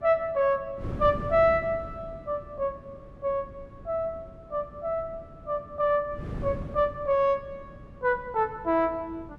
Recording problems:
wind on the microphone; below 250 Hz, SNR 14 dB

